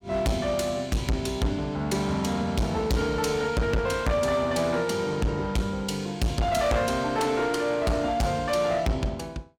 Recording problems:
distortion; hard clipping, uneven, signal-to-distortion ratio 6 dB

